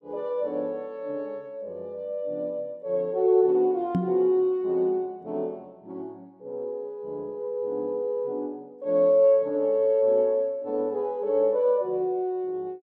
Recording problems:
knock on the microphone; at 4 s; peak +3 dB vs average level

